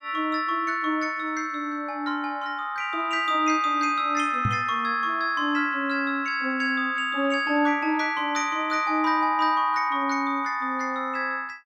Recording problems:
knock on the microphone; at 4.5 s; peak +1 dB vs average level

